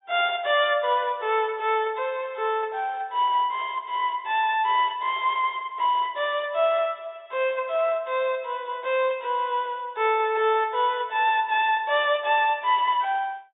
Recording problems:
low-pass filter; nothing above 4 kHz

